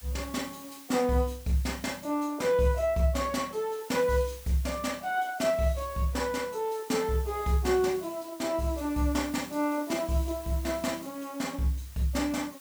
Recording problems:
background hiss; slope +1 dB per octave, SNR 18 dB

